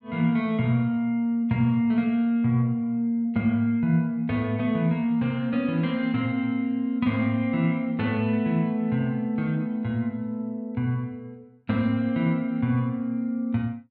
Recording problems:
none

